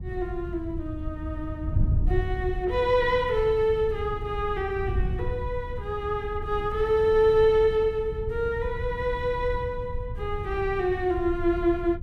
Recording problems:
wind noise; below 96 Hz, SNR 8 dB

